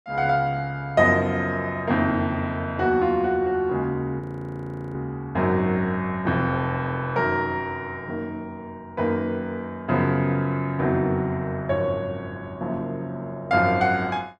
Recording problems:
audio freezing; at 4 s for 0.5 s

